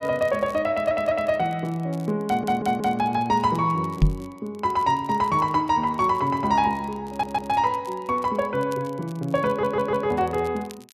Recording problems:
crackling; vinyl, SNR 27 dB
audio stuttering; 4 times, first at 0.5 s
microphone bump; at 4 s; peak +8 dB vs average level

